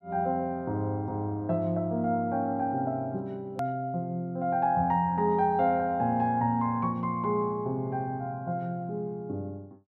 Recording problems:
click at an edit; at 3.5 s

